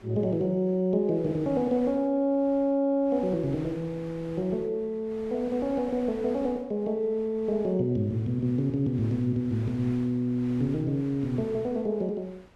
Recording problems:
wind on the microphone; below 1.5 kHz, SNR 22 dB

